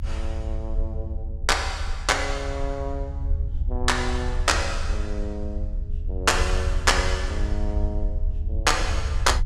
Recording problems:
rumble; below 74 Hz, SNR 4 dB

